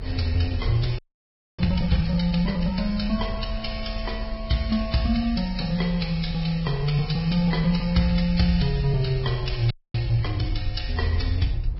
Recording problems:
codec artefacts; MP2, then Vorbis, log-spectral distance 4 dB, nothing above 5.3 kHz
low-frequency rumble; below 66 Hz, strongest tone 40 Hz, SNR 9 dB
wind noise; below 530 Hz, SNR 25 dB
audio freezing; at 1 s for 0.5 s and at 9.5 s

